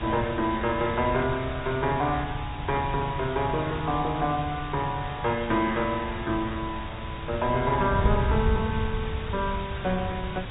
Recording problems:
low-pass filter; nothing above 3.4 kHz
lossy compression; MP3, then MP3, log-spectral distance 13 dB
hiss; SNR 12 dB
wind noise; below 120 Hz, SNR 7 dB

